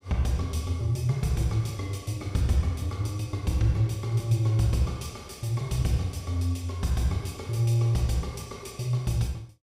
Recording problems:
none

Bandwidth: 15.5 kHz